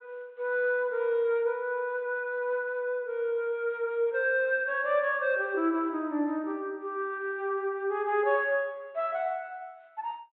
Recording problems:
treble missing; nothing above 4 kHz

